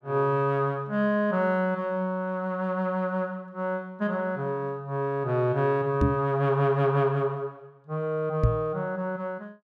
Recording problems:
knock on the microphone; at 6 s and at 8.5 s; peak +8 dB vs average level

